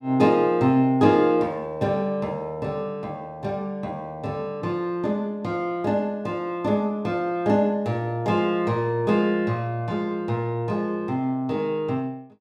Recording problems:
none

